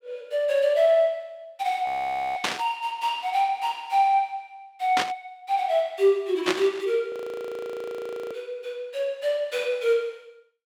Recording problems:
frozen audio; at 2 s and at 7 s for 1 s
burst of static; at 2.5 s, at 5 s and at 6.5 s; peak +4 dB vs average level

